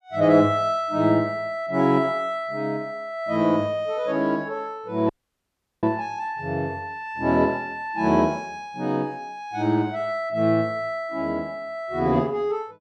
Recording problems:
dropout; at 5 s for 0.5 s

